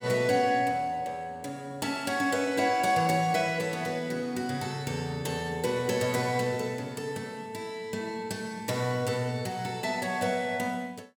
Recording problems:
none

